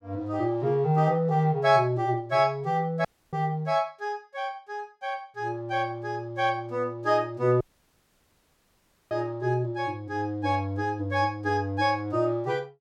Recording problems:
audio cutting out; at 3 s and at 7.5 s for 1.5 s

